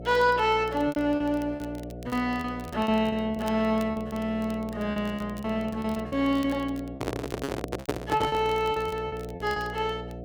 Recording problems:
hum; 60 Hz, harmonics up to 720 Hz, SNR 12 dB
crackle; vinyl, SNR 24 dB
lost packets; 12% of the sound replaced, filled with repeated pitch periods
microphone handling noise; from 7 to 8.5 s; peak +3 dB vs average level

